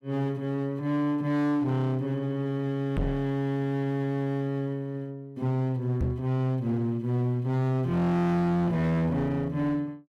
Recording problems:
distortion; hard clipping, signal-to-distortion ratio 7 dB
microphone bump; at 3 s and at 6 s; peak +3 dB vs average level

